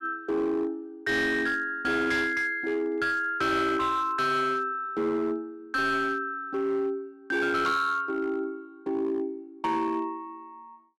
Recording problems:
distortion; hard clipping, signal-to-distortion ratio 12 dB

